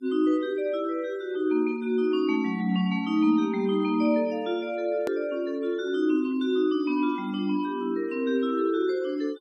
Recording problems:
noise reduction artefacts; signal-to-artefact ratio 26 dB
edit click; at 5 s

